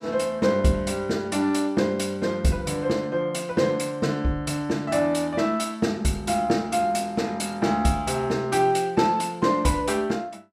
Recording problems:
none

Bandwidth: 14 kHz